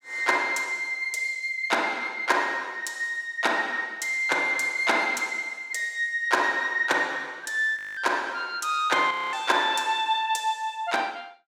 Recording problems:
audio freezing; at 8 s and at 9 s

